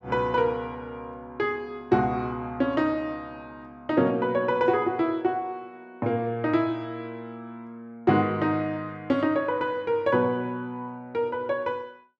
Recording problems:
none

